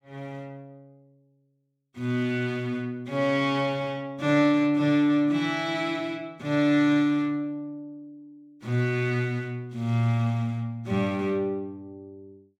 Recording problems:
none

